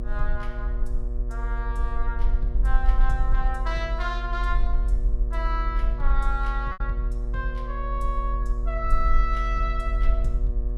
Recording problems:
electrical hum; 60 Hz, harmonics up to 1.3 kHz, SNR 9 dB
low-frequency rumble; below 44 Hz, SNR -5 dB
packet loss; 0.8% of the sound replaced, filled with repeated pitch periods

